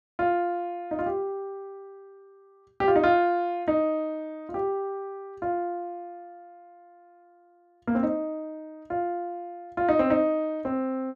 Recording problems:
none

